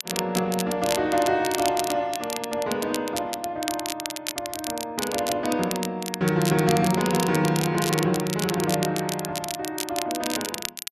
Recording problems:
crackle; vinyl, SNR 6 dB

